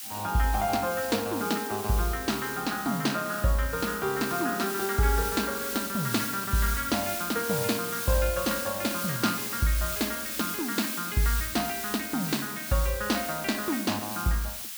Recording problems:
hiss; SNR 4 dB

